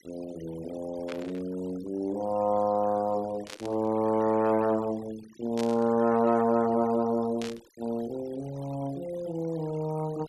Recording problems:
noise reduction artefacts; signal-to-artefact ratio 20 dB
static burst; 4 times, first at 1 s; peak -6 dB vs average level

